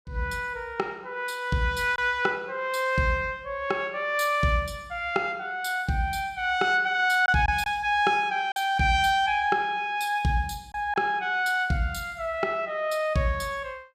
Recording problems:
packet loss; 1.2% of the sound replaced, filled with silence

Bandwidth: 14.5 kHz